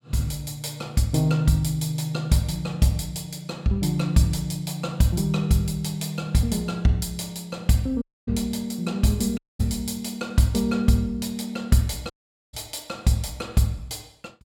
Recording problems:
dropout; at 8 s, at 9.5 s and at 12 s

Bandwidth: 17 kHz